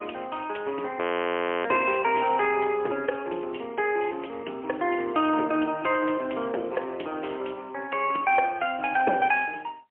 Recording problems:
telephone audio; 280 Hz to 3.3 kHz, AMR-NB, then MP3
frozen audio; at 1 s for 0.5 s

